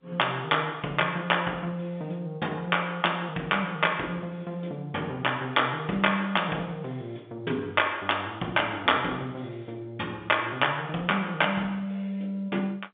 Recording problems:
telephone audio; 150 Hz to 3.6 kHz, G.711

